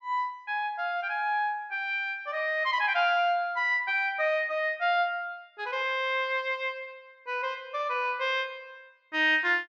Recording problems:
none

